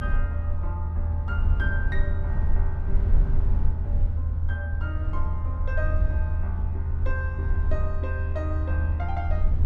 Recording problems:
low-frequency rumble; below 80 Hz, SNR -10 dB

